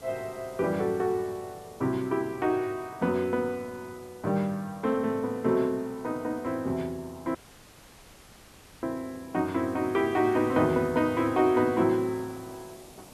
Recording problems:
hiss; SNR 23 dB
audio cutting out; at 7.5 s for 1.5 s

